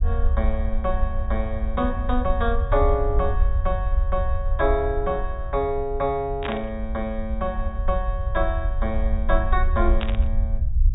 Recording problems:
treble cut off; nothing above 4 kHz
rumble; below 64 Hz, SNR 0 dB
burst of static; at 6.5 s and at 10 s; peak 0 dB vs average level

